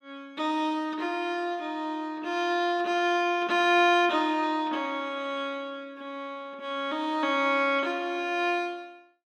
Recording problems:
none

